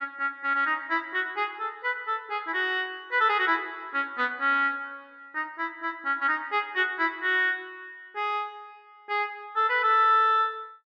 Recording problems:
none

